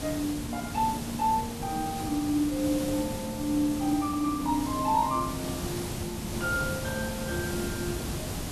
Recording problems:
hiss; slope -4 dB per octave, SNR 5 dB

